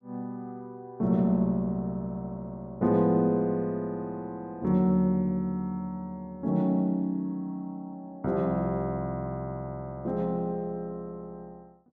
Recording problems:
none

